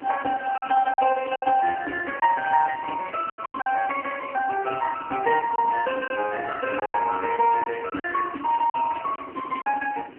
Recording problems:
telephone audio; 220 Hz to 3.1 kHz, AMR-NB
hiss; SNR 25 dB
wind noise; below 400 Hz, SNR 17 dB
lost packets; 7% of the sound replaced, filled with silence

